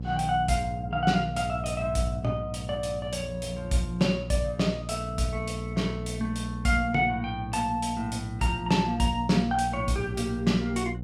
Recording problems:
hum; 60 Hz, harmonics up to 540 Hz, SNR 8 dB

